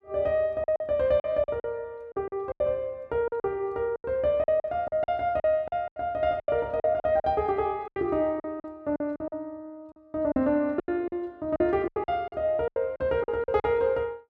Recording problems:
lost packets; 14% of the sound replaced, filled with silence

